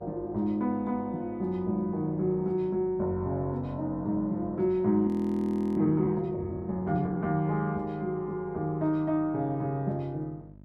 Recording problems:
electrical hum; 50 Hz, harmonics up to 950 Hz, SNR 23 dB
frozen audio; at 5 s for 0.5 s

